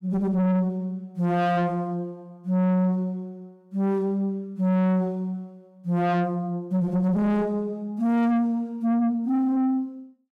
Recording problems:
distortion; soft clipping, signal-to-distortion ratio 6 dB

